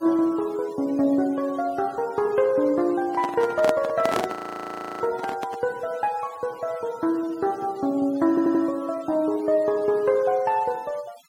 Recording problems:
denoising artefacts; signal-to-artefact ratio 23 dB
handling noise; from 3 to 5.5 s; peak +2 dB vs average level
audio freezing; at 4.5 s for 0.5 s
audio stuttering; at 8.5 s

